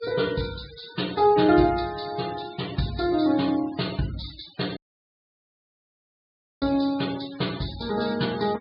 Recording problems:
low-pass filter; nothing above 4.9 kHz
denoising artefacts; signal-to-artefact ratio 17 dB
audio cutting out; at 5 s for 2 s

